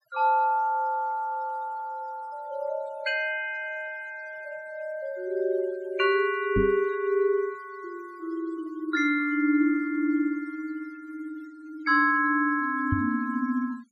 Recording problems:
denoising artefacts; signal-to-artefact ratio 27 dB
knock on the microphone; at 6.5 s and at 13 s; peak +3 dB vs average level

